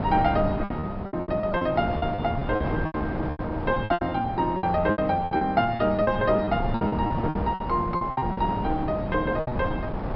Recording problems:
low-pass filter; nothing above 5.3 kHz
wind on the microphone; below 600 Hz, SNR 5 dB
packet loss; 18% of the sound replaced, filled with repeated pitch periods

